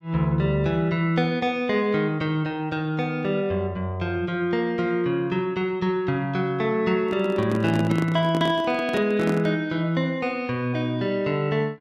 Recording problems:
microphone handling noise; from 7 to 9.5 s; peak -1 dB vs average level

